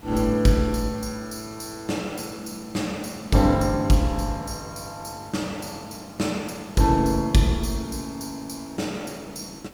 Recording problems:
background hiss; slope -5 dB per octave, SNR 22 dB

